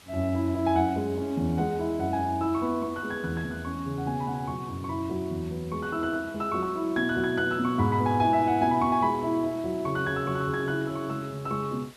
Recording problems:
background hiss; slope -1 dB per octave, SNR 23 dB

